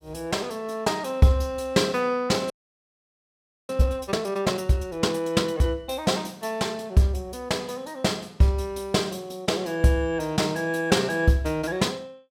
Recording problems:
frozen audio; at 2.5 s for 1 s

